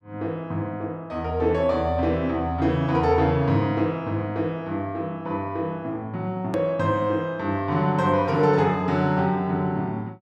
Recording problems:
click at an edit; at 6.5 s

